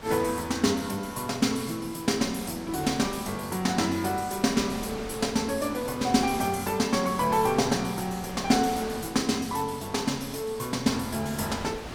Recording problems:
wind noise; below 2 kHz, SNR 14 dB

